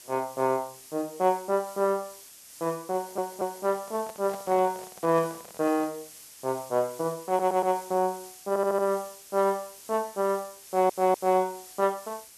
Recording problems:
hiss; SNR 17 dB
audio stuttering; 4 times, first at 3 s
microphone handling noise; from 3 to 6 s; peak -10 dB vs average level

